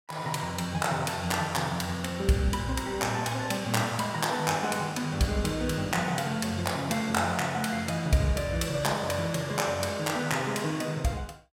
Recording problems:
none

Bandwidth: 16.5 kHz